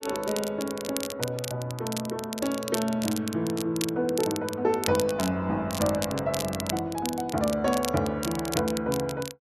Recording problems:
crackle; vinyl, SNR 8 dB

